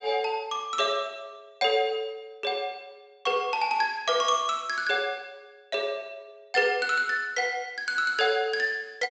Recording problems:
treble cut off; nothing above 8 kHz

